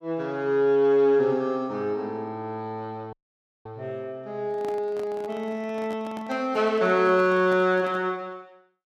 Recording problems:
dropout; at 3 s for 0.5 s
handling noise; from 4.5 to 8 s; peak -11 dB vs average level

